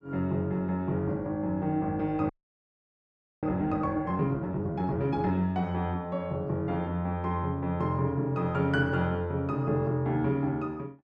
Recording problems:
frozen audio; at 2.5 s for 1 s

